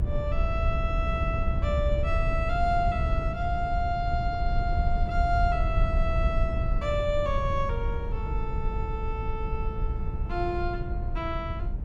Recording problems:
low-frequency rumble; below 88 Hz, SNR -1 dB

